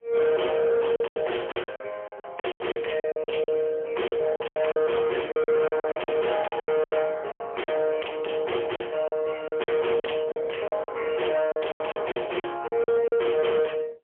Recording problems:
phone line; 320 Hz to 3.2 kHz, AMR-NB, then MP3
distortion; hard clipping, signal-to-distortion ratio 8 dB
lost packets; 15% of the sound replaced, filled with silence

